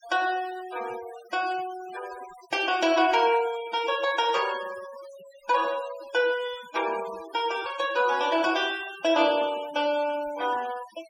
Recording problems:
denoising artefacts; signal-to-artefact ratio 16 dB

